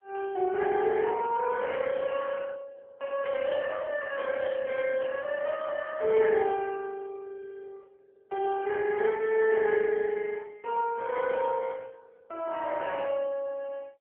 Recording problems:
phone line; 320 Hz to 2.8 kHz, AMR-NB

